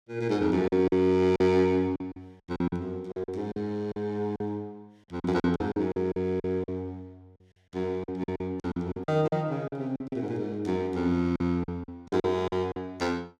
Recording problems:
lost packets; 12% of the sound replaced, filled with silence

